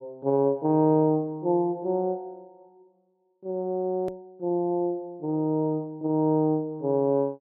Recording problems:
low-pass filter; nothing above 4.6 kHz
hard cut with a click; at 4 s

